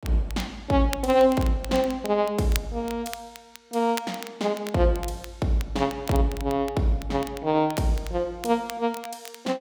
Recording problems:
crackle; vinyl, SNR 16 dB

